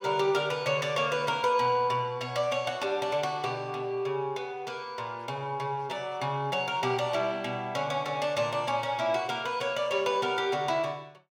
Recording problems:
none

